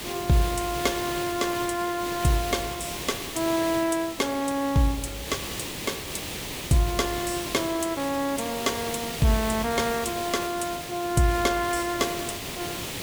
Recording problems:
hiss; SNR 7 dB

